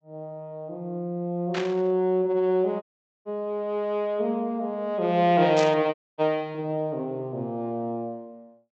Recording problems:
treble missing; nothing above 8 kHz
static burst; at 1.5 s and at 5.5 s; peak -3 dB vs average level
dropout; at 3 s and at 6 s

